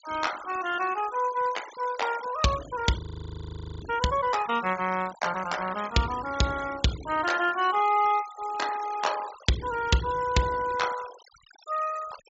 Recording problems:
treble cut off; nothing above 8 kHz
noise reduction artefacts; signal-to-artefact ratio 15 dB
audio freezing; at 3 s for 1 s

